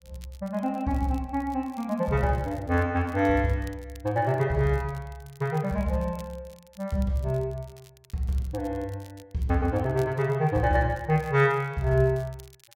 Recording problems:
crackle; vinyl, SNR 28 dB

